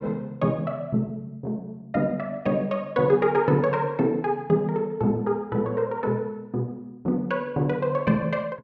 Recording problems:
none

